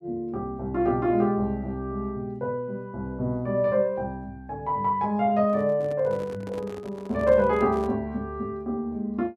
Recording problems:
handling noise; from 5.5 to 8 s; peak -10 dB vs average level

